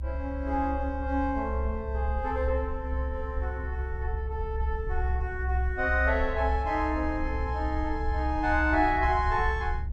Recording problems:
low-frequency rumble; below 68 Hz, strongest tone 66 Hz, SNR 3 dB

